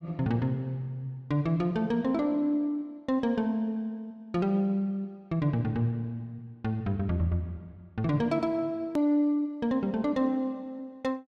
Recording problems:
click at an edit; at 9 s

